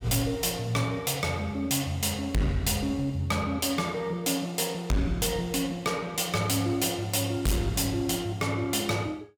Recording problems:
distortion; hard clipping, signal-to-distortion ratio 8 dB

